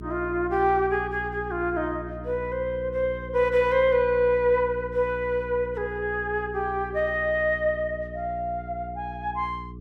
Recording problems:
hum; 60 Hz, harmonics up to 420 Hz, SNR 14 dB

